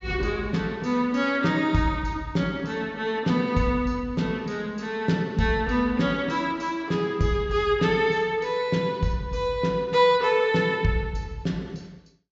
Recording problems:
treble missing; nothing above 8 kHz

